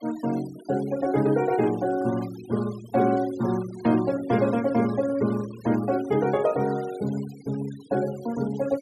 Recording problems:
noise reduction artefacts; signal-to-artefact ratio 20 dB

